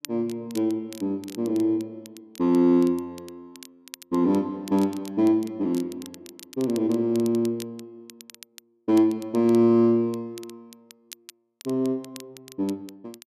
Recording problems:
crackling; vinyl, SNR 22 dB

